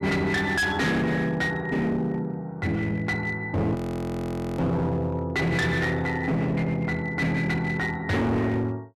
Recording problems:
distortion; hard clipping, signal-to-distortion ratio 7 dB
audio freezing; at 4 s for 1 s

